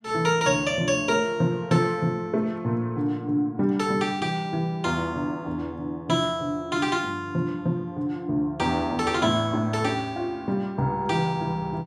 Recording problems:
none

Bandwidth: 13.5 kHz